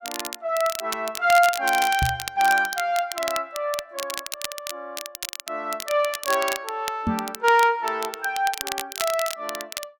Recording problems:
crackling; vinyl, SNR 9 dB
microphone bump; at 2 s and at 7 s; peak +2 dB vs average level

